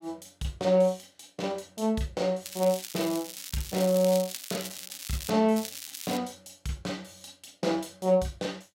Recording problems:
crackling; from 2.5 to 5.5 s and at 5.5 s; loose cable, SNR 9 dB

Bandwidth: 16 kHz